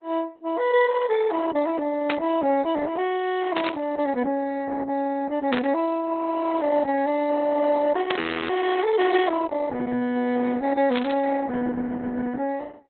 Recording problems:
codec artefacts; Opus, log-spectral distance 4 dB, nothing above 3.6 kHz
burst of static; 5 times, first at 2 s; peak 0 dB vs average level
audio freezing; at 8 s

